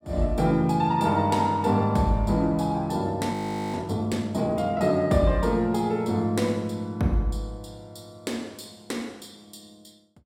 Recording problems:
audio freezing; at 3.5 s

